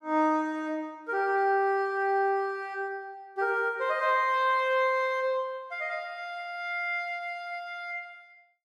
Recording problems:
none

